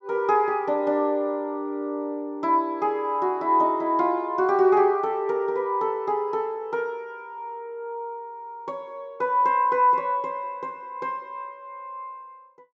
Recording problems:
treble cut off; nothing above 8 kHz

